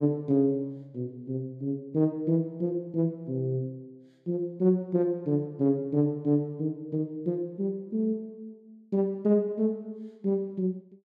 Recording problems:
none

